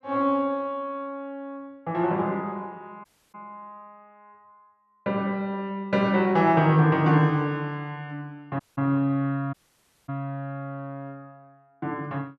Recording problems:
audio cutting out; at 3 s, at 8.5 s and at 9.5 s for 0.5 s

